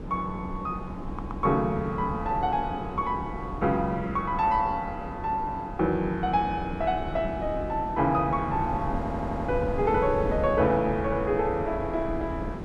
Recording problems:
wind on the microphone; below 320 Hz, SNR 8 dB
audio stuttering; at 1 s and at 9 s

